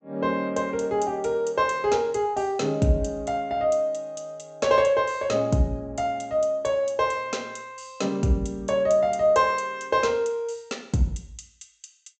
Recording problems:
treble cut off; nothing above 8 kHz

